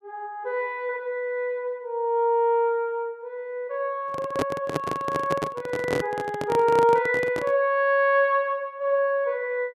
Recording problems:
microphone handling noise; from 4 to 7.5 s; peak +2 dB vs average level

